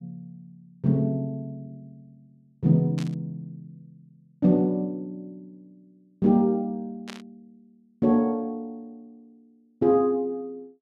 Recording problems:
static burst; at 3 s and at 7 s; peak -10 dB vs average level

